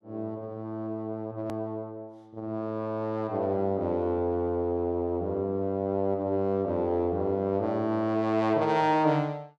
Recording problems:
hard cut with a click; at 1.5 s

